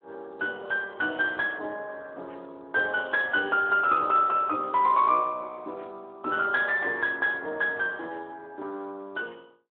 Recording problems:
telephone audio; 320 Hz to 3.3 kHz, Speex

